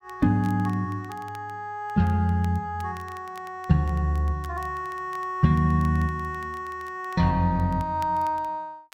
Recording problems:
crackle; vinyl, SNR 27 dB

